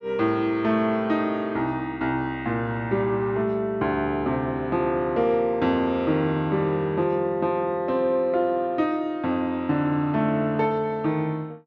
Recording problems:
none

